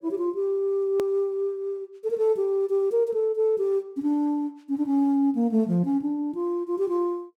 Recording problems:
click at an edit; at 1 s

